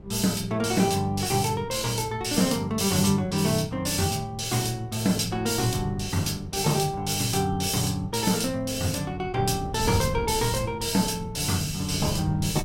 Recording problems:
wind noise; below 190 Hz, SNR 15 dB

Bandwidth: 16 kHz